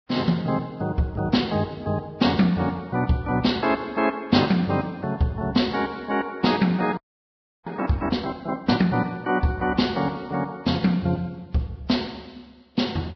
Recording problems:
codec artefacts; Vorbis, log-spectral distance 3 dB, nothing above 5.2 kHz
audio freezing; at 7 s for 0.5 s

